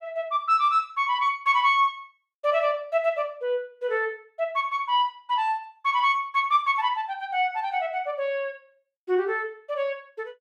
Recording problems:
none

